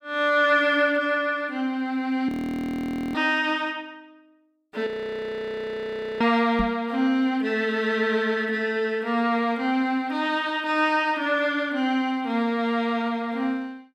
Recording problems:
audio freezing; at 2.5 s for 1 s and at 5 s for 1.5 s
microphone thump; at 6.5 s; peak 0 dB vs average level

